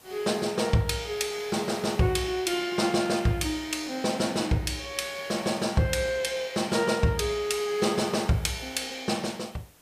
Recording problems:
background hiss; slope -3 dB per octave, SNR 25 dB

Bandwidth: 15 kHz